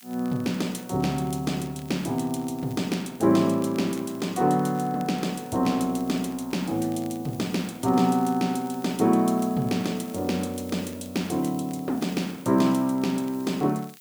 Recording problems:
background hiss; SNR 22 dB
crackle; vinyl, SNR 28 dB

